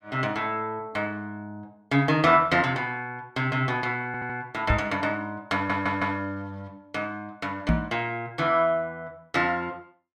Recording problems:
stutter; at 4 s and at 5.5 s
microphone thump; at 4.5 s and at 7.5 s; peak +7 dB vs average level

